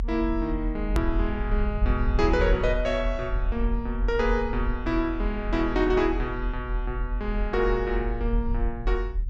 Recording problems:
low-pass filter; nothing above 8 kHz
rumble; below 50 Hz, strongest tone 40 Hz, SNR 3 dB
hard cut with a click; at 1 s

